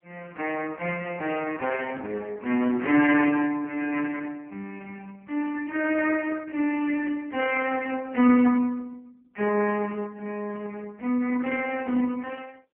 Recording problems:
phone line; 220 Hz to 3.1 kHz, AMR-NB

